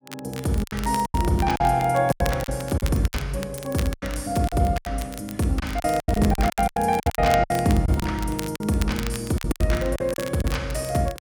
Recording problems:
crackle; vinyl, SNR 14 dB
lost packets; 14% of the sound replaced, filled with silence

